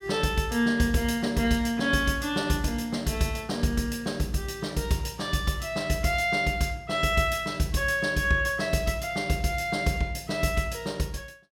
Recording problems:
none

